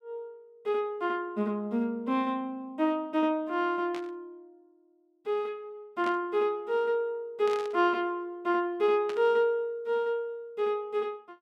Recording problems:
burst of static; 4 times, first at 4 s; peak -8 dB vs average level

